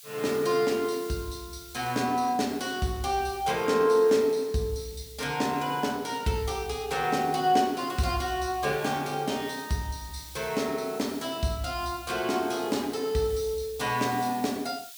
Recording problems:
background hiss; SNR 18 dB

